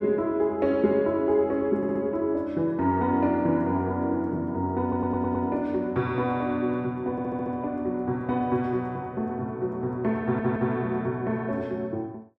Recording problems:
audio stuttering; 4 times, first at 2 s

